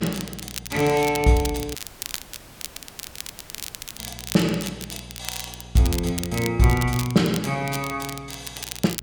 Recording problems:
electrical hum; 60 Hz, harmonics up to 660 Hz, SNR 21 dB
crackle; vinyl, SNR 11 dB
dropout; at 2 s for 2 s

